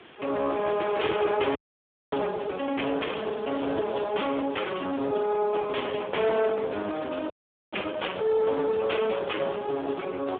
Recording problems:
phone line; 280 Hz to 3.5 kHz, Speex
distorted audio; soft clipping, signal-to-distortion ratio 10 dB
background hiss; SNR 23 dB
wind on the microphone; below 850 Hz, SNR 21 dB
frozen audio; at 1.5 s for 0.5 s and at 7.5 s

